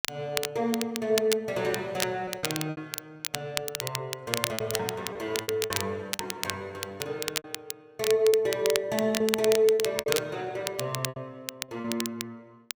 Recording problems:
crackling; vinyl, SNR 4 dB
lost packets; 7% of the sound replaced, filled with repeated pitch periods

